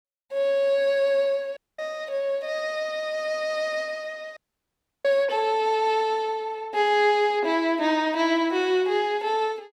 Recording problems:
audio cutting out; at 1.5 s and at 4.5 s for 0.5 s

